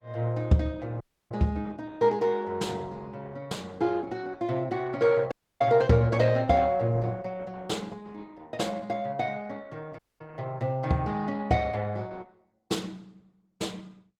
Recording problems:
codec artefacts; Opus, log-spectral distance 3 dB, nothing above 19.5 kHz
audio cutting out; at 1 s, at 5.5 s and at 10 s

